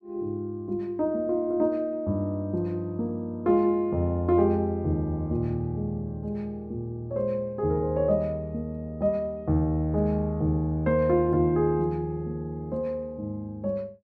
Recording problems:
none

